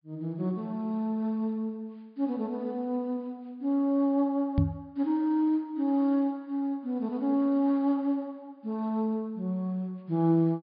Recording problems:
treble missing; nothing above 5 kHz
microphone bump; at 4.5 s; peak +7 dB vs average level

